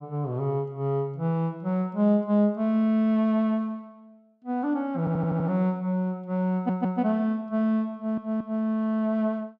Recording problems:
stutter; at 5 s, at 6.5 s and at 8 s

